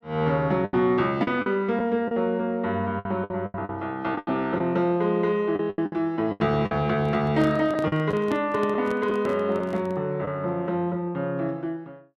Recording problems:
packet loss; 8% of the sound replaced, filled with the last packet
handling noise; from 7 to 10 s; peak -4 dB vs average level

